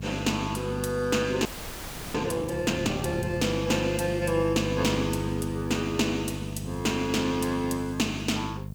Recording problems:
electrical hum; 50 Hz, harmonics up to 500 Hz, SNR 7 dB
background hiss; slope +4 dB per octave, SNR 30 dB
audio freezing; at 1.5 s for 0.5 s

